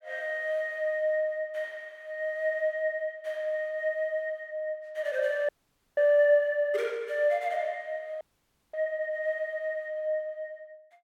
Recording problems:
audio freezing; at 5.5 s and at 8 s for 0.5 s

